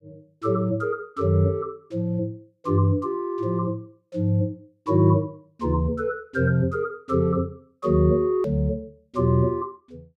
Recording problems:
edit click; at 8.5 s

